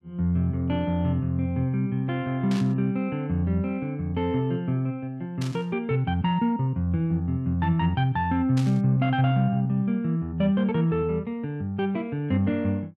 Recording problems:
burst of static; at 2.5 s, at 5.5 s and at 8.5 s; peak -9 dB vs average level

